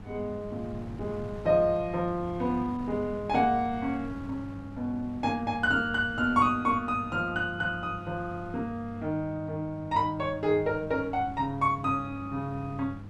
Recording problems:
hum; 50 Hz, harmonics up to 500 Hz, SNR 16 dB
wind on the microphone; below 300 Hz, SNR 17 dB

